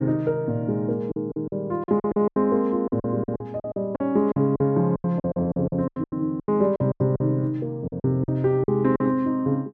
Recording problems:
lost packets; 16% of the sound replaced, filled with silence

